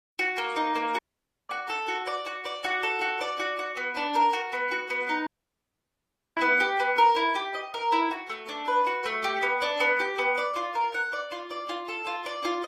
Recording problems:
lossy codec; AAC, log-spectral distance 2 dB, nothing above 13.5 kHz
dropout; at 1 s for 0.5 s and at 5.5 s for 1 s

